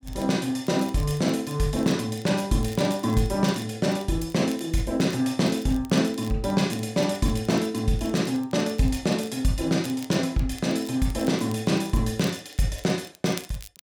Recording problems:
crackling; vinyl, SNR 22 dB

